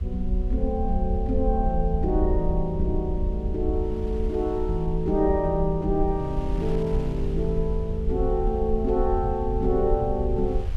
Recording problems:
low-frequency rumble; below 64 Hz, SNR 4 dB
wind noise; below 2 kHz, SNR 23 dB

